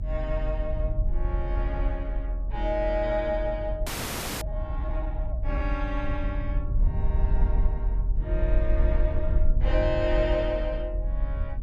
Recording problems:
rumble; below 54 Hz, SNR -2 dB
frozen audio; at 4 s for 0.5 s

